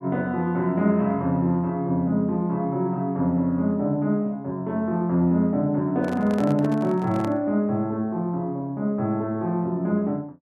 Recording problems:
microphone handling noise; from 6 to 7.5 s; peak -7 dB vs average level

